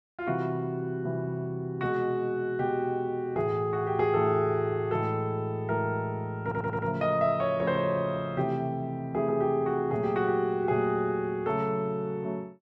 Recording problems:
audio stuttering; at 6.5 s

